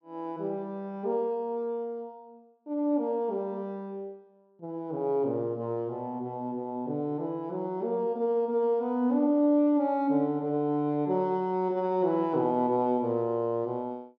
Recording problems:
none

